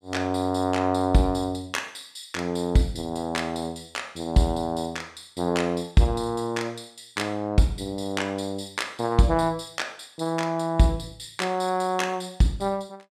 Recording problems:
none

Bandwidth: 15.5 kHz